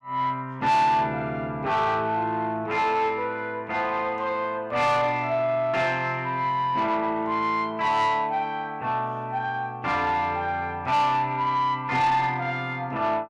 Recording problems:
distortion; soft clipping, signal-to-distortion ratio 11 dB

